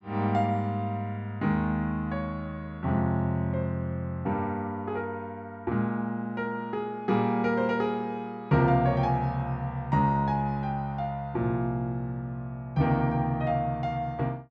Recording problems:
none

